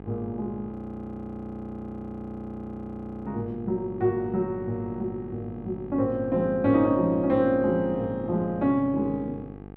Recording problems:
mains hum; 50 Hz, harmonics up to 1.6 kHz, SNR 14 dB
frozen audio; at 0.5 s for 2.5 s

